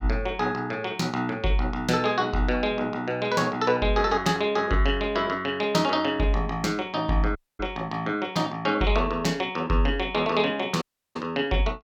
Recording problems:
audio cutting out; at 7.5 s and at 11 s

